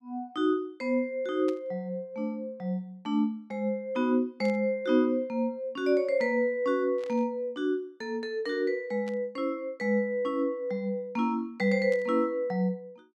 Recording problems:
static burst; 5 times, first at 1.5 s; peak -14 dB vs average level

